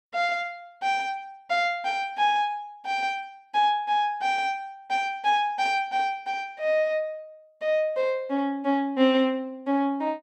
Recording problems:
none

